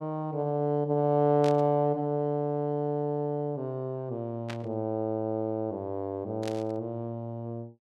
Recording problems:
burst of static; at 1.5 s, at 4.5 s and at 6.5 s; peak -6 dB vs average level

